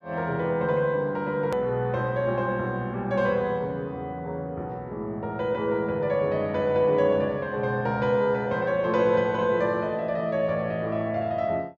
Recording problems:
edit click; at 1.5 s

